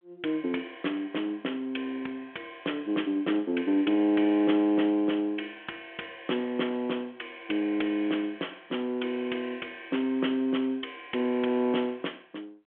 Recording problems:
telephone audio; 260 Hz to 3.4 kHz, G.726

